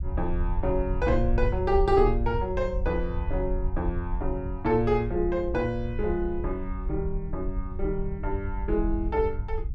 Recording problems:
rumble; below 62 Hz, SNR 4 dB

